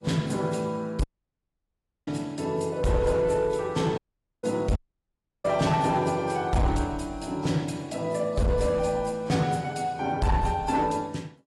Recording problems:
lossy codec; AAC, log-spectral distance 2 dB
distortion; hard clipping, signal-to-distortion ratio 11 dB
audio cutting out; at 1 s for 1 s, at 4 s and at 5 s for 0.5 s

